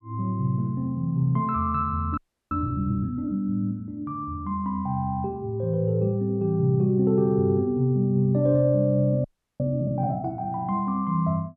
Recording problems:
audio freezing; at 2 s and at 9 s

